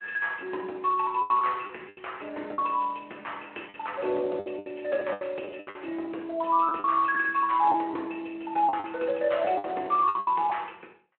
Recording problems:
phone line; 300 Hz to 3.2 kHz, Speex
packet loss; 10% of the sound replaced, filled with the last packet

